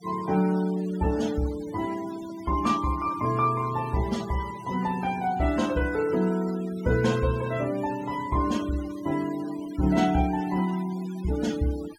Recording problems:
denoising artefacts; signal-to-artefact ratio 18 dB

